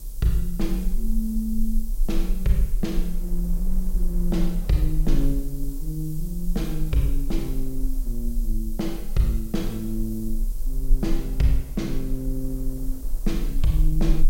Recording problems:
hum; 50 Hz, harmonics up to 500 Hz, SNR 27 dB
background hiss; slope +8 dB per octave, SNR 17 dB
rumble; below 34 Hz, strongest tone 20 Hz, SNR 2 dB
wind on the microphone; below 420 Hz, SNR 21 dB

